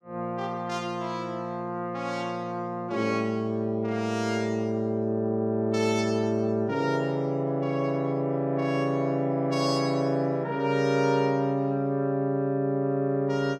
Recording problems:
none

